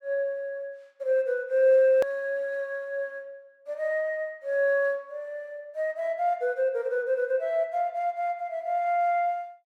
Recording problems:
edit click; at 2 s

